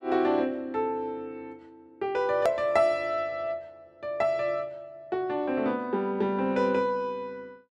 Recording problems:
click at an edit; at 2.5 s

